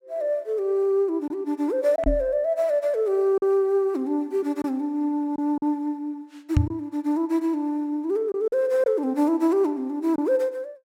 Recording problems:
lost packets; 3% of the sound replaced, filled with silence
knock on the microphone; at 2 s and at 6.5 s; peak +8 dB vs average level

